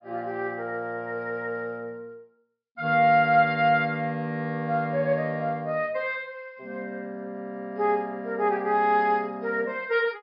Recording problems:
low-pass filter; nothing above 5.5 kHz

